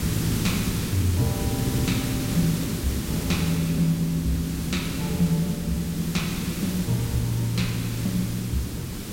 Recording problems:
background hiss; SNR 4 dB
wind noise; below 220 Hz, SNR 23 dB

